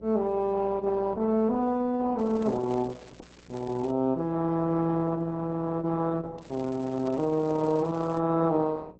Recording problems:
lossy compression; Opus, log-spectral distance 3 dB
electrical hum; 60 Hz, harmonics up to 600 Hz, SNR 23 dB
crackling; from 2 to 4 s and from 6.5 to 8 s; loose cable, SNR 27 dB

